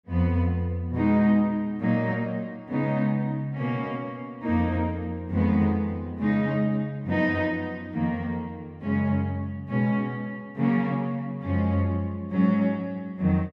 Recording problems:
none

